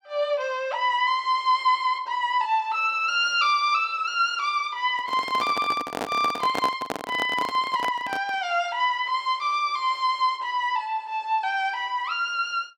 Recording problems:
microphone handling noise; from 5 to 8.5 s; peak 0 dB vs average level

